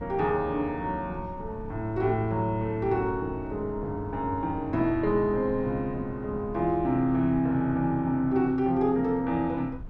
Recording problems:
wind on the microphone; below 160 Hz, SNR 16 dB

